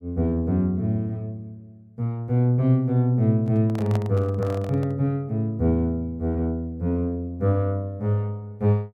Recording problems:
handling noise; from 3.5 to 5 s; peak -6 dB vs average level

